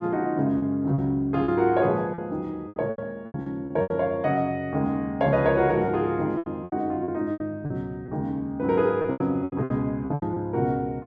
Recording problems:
packet loss; 12% of the sound replaced, filled with repeated pitch periods

